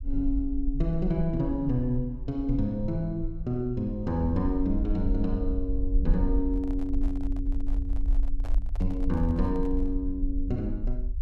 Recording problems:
rumble; below 46 Hz, SNR 3 dB
microphone handling noise; from 6.5 to 10 s; peak -11 dB vs average level

